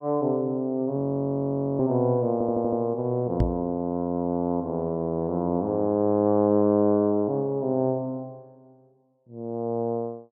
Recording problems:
frozen audio; at 1 s for 1 s
audio stuttering; at 2.5 s
microphone bump; at 3.5 s; peak +5 dB vs average level

